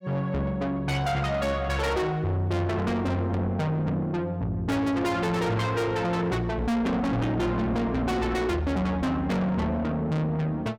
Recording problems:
distorted audio; soft clipping, signal-to-distortion ratio 8 dB

